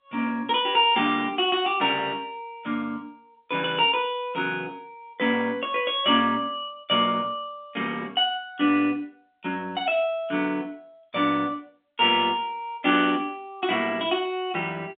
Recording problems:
phone line; 190 Hz to 3.6 kHz, G.711

